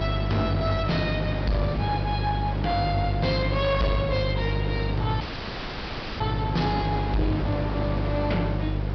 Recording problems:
treble missing; nothing above 5.5 kHz
distorted audio; soft clipping, signal-to-distortion ratio 11 dB
electrical hum; 50 Hz, harmonics up to 700 Hz, SNR 1 dB
hiss; SNR 6 dB
dropout; at 5 s for 1 s

